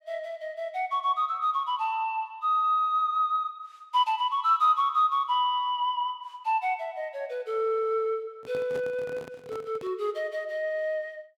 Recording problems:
microphone handling noise; from 8.5 to 10 s; peak -9 dB vs average level

